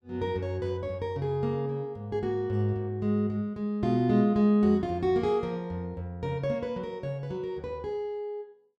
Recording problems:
none

